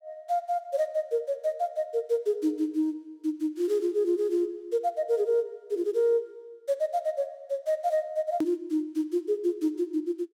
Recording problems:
edit click; at 8.5 s

